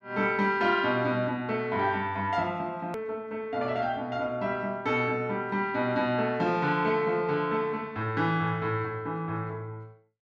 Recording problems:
hard cut with a click; at 3 s

